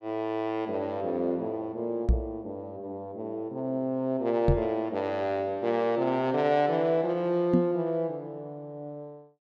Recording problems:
knock on the microphone; at 2 s, at 4.5 s and at 7.5 s; peak +8 dB vs average level

